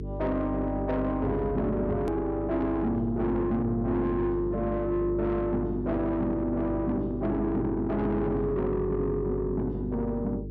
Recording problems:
low-pass filter; nothing above 6.5 kHz
distorted audio; soft clipping, signal-to-distortion ratio 11 dB
hum; 50 Hz, harmonics up to 450 Hz, SNR 8 dB
click at an edit; at 2 s

